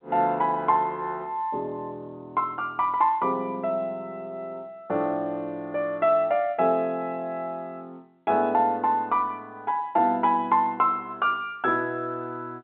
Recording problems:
telephone audio; 220 Hz to 3.6 kHz, G.711

